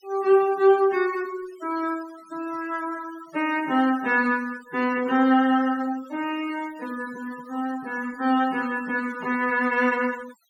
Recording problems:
noise reduction artefacts; signal-to-artefact ratio 20 dB

